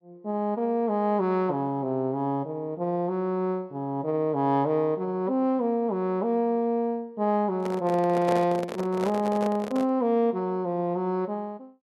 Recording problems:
handling noise; from 7.5 to 10 s; peak -2 dB vs average level

